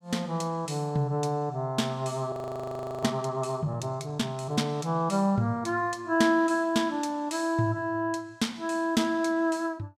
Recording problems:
frozen audio; at 2.5 s for 0.5 s

